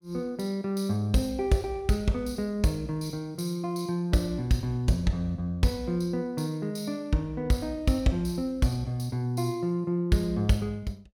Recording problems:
none

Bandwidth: 17 kHz